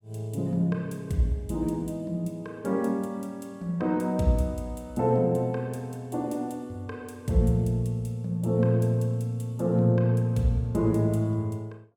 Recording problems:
none

